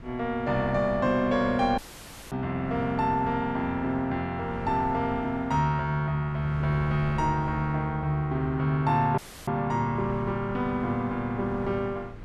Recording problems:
wind on the microphone; below 250 Hz, SNR 16 dB
dropout; at 2 s for 0.5 s and at 9 s

